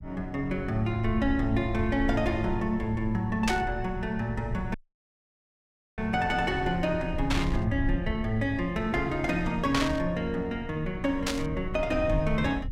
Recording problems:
low-frequency rumble; below 88 Hz, SNR 9 dB
static burst; 4 times, first at 3.5 s; peak +4 dB vs average level
dropout; at 4.5 s for 1 s

